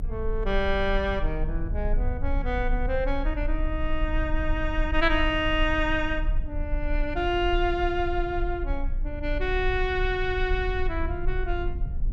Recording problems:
low-frequency rumble; below 48 Hz, strongest tone 30 Hz, SNR 4 dB

